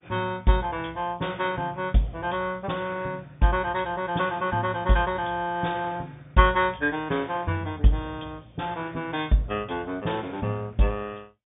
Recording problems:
treble cut off; nothing above 3.7 kHz
lossy compression; MP2, log-spectral distance 3 dB

